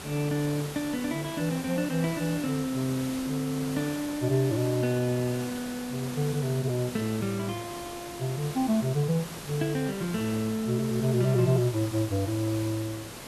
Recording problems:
hiss; slope -3 dB per octave, SNR 11 dB

